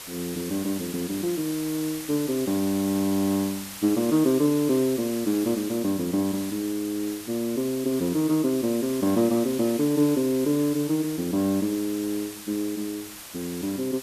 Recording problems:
background hiss; slope 0 dB per octave, SNR 12 dB

